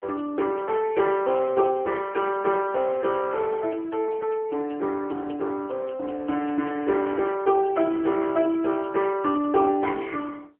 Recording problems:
telephone audio; 260 Hz to 3.2 kHz, AMR-NB

